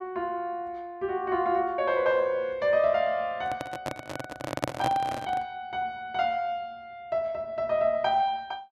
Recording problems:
microphone handling noise; from 3.5 to 5.5 s; peak +4 dB vs average level

